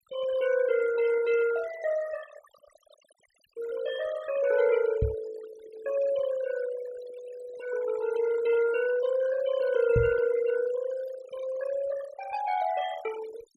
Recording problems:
noise reduction artefacts; signal-to-artefact ratio 14 dB
microphone thump; at 5 s and at 10 s; peak +4 dB vs average level

